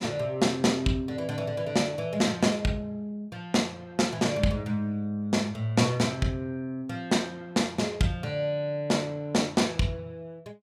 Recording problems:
none

